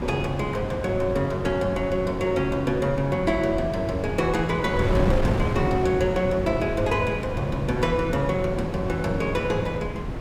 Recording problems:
wind noise; below 360 Hz, SNR 5 dB

